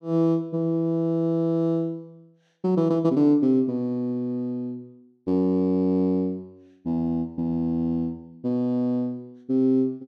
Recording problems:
none

